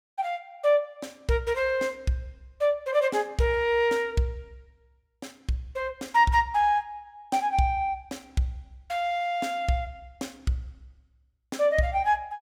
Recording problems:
none

